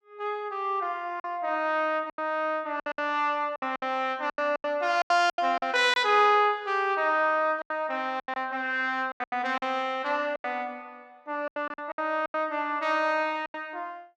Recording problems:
lost packets; 11% of the sound replaced, filled with silence

